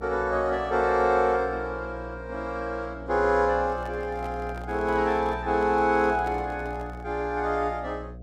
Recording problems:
hum; 60 Hz, harmonics up to 720 Hz, SNR 14 dB
microphone handling noise; from 3.5 to 7 s; peak -9 dB vs average level

